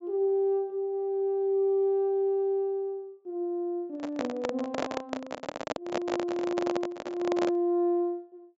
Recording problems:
treble missing; nothing above 8 kHz
microphone handling noise; from 4 to 7.5 s; peak +1 dB vs average level

